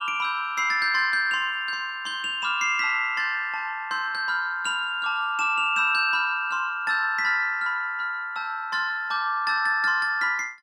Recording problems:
none

